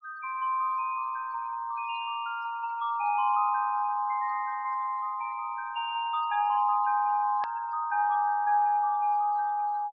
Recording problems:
low-pass filter; nothing above 5.6 kHz
denoising artefacts; signal-to-artefact ratio 22 dB
hard cut with a click; at 7.5 s

